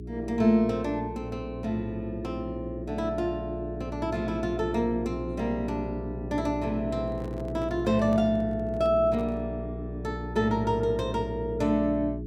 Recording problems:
hum; 60 Hz, harmonics up to 420 Hz, SNR 8 dB
handling noise; from 7 to 9.5 s; peak -10 dB vs average level

